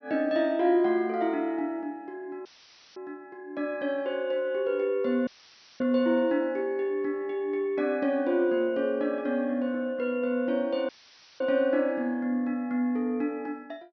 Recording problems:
treble cut off; nothing above 6 kHz
audio cutting out; at 2.5 s for 0.5 s, at 5.5 s for 0.5 s and at 11 s for 0.5 s; filled with static

